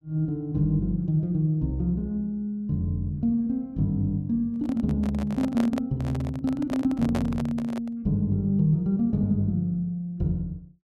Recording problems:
microphone handling noise; from 4.5 to 8 s; peak -2 dB vs average level

